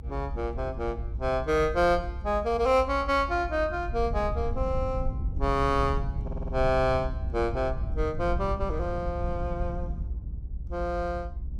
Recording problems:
low-frequency rumble; below 78 Hz, SNR 6 dB
audio stuttering; at 6 s

